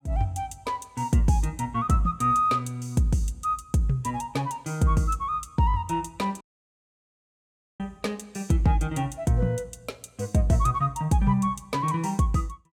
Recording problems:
dropout; at 6.5 s for 1.5 s

